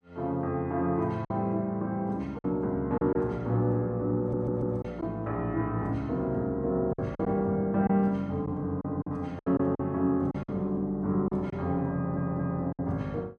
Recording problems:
packet loss; 6% of the sound replaced, filled with silence
stutter; at 4 s and at 12 s

